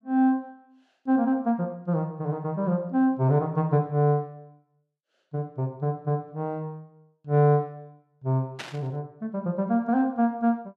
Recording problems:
static burst; at 8.5 s; peak -5 dB vs average level

